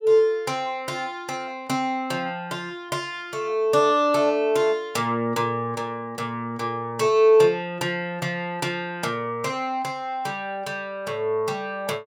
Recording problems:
none

